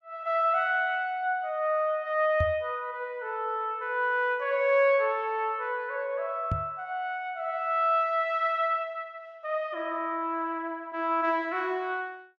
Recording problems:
microphone thump; at 2.5 s and at 6.5 s; peak +2 dB vs average level

